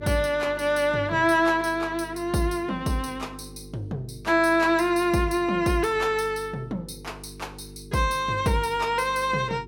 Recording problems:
electrical hum; 50 Hz, harmonics up to 450 Hz, SNR 19 dB

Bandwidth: 17 kHz